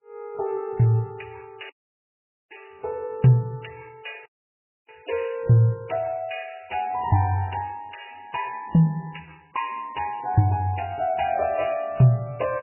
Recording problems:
codec artefacts; MP3, log-spectral distance 10 dB, nothing above 2.4 kHz
dropout; at 1.5 s for 1 s and at 4.5 s for 0.5 s

